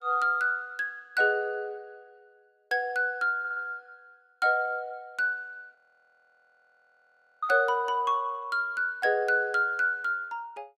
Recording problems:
audio stuttering; at 3.5 s
audio freezing; at 6 s for 1.5 s

